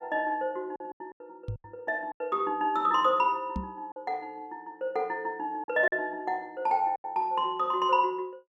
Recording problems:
lost packets; 7% of the sound replaced, filled with silence
knock on the microphone; at 1.5 s and at 3.5 s; peak -2 dB vs average level

